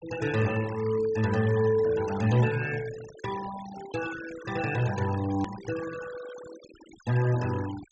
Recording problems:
treble cut off; nothing above 8 kHz
noise reduction artefacts; signal-to-artefact ratio 14 dB
click at an edit; at 5.5 s

